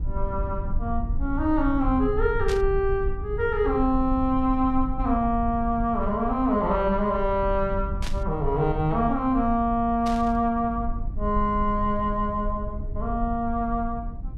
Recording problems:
low-frequency rumble; below 66 Hz, SNR 8 dB
burst of static; at 2.5 s, at 8 s and at 10 s; peak -6 dB vs average level

